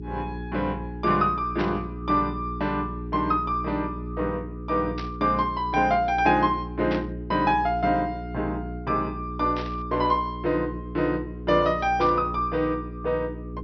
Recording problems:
treble cut off; nothing above 5.9 kHz
electrical hum; 60 Hz, harmonics up to 420 Hz, SNR 10 dB
burst of static; 5 times, first at 1.5 s; peak -6 dB vs average level

